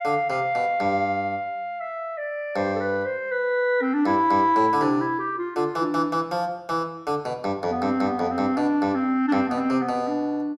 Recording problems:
none

